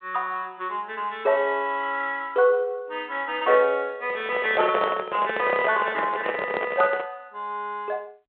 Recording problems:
phone line; 240 Hz to 3.4 kHz, G.726
handling noise; from 4 to 7 s; peak +2 dB vs average level

